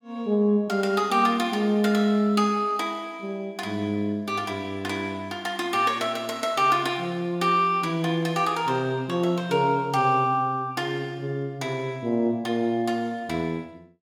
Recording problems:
none

